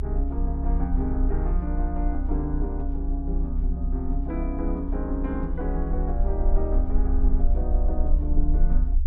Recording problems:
rumble; below 62 Hz, strongest tone 34 Hz, SNR -4 dB

